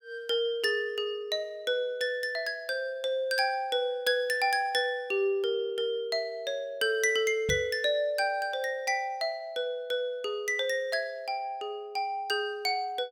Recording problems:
microphone thump; at 7.5 s; peak -2 dB vs average level

